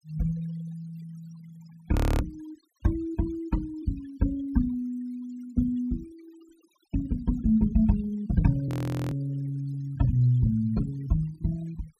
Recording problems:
noise reduction artefacts; signal-to-artefact ratio 23 dB
frozen audio; at 2 s and at 8.5 s

